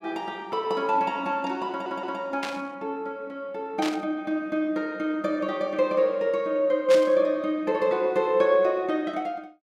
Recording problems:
stutter; at 1.5 s
static burst; at 2.5 s, at 4 s and at 7 s; peak -3 dB vs average level

